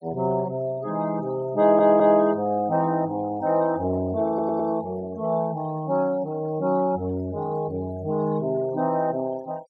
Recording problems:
denoising artefacts; signal-to-artefact ratio 27 dB
stutter; at 1.5 s and at 4.5 s

